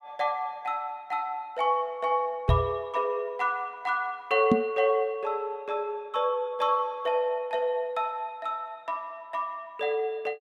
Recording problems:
microphone bump; at 2.5 s and at 4.5 s; peak +9 dB vs average level

